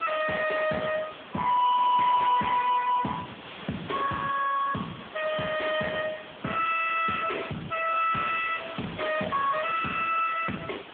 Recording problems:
telephone audio; 170 Hz to 2.1 kHz, AMR-NB
distortion; soft clipping, signal-to-distortion ratio 7 dB
hiss; SNR 16 dB

